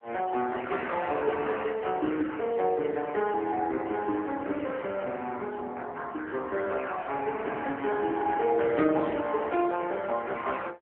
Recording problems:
telephone audio; 240 Hz to 3.5 kHz, AMR-NB

